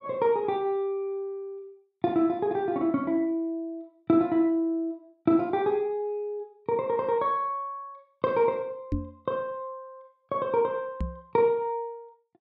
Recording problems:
microphone thump; at 9 s and at 11 s; peak +2 dB vs average level

